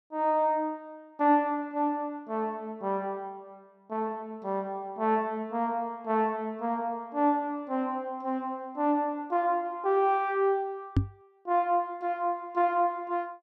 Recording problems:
knock on the microphone; at 11 s; peak +8 dB vs average level

